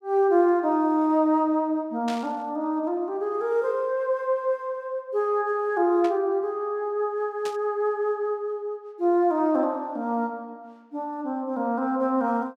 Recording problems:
burst of static; at 2 s, at 6 s and at 7.5 s; peak -7 dB vs average level

